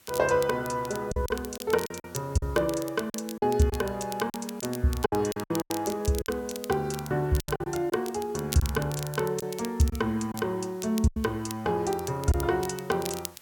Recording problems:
hiss; slope -1 dB per octave, SNR 26 dB
crackling; vinyl, SNR 13 dB
packet loss; 8% of the sound replaced, filled with silence

